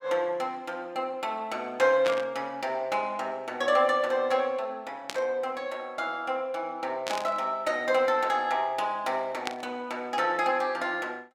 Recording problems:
static burst; 4 times, first at 2 s; peak +1 dB vs average level

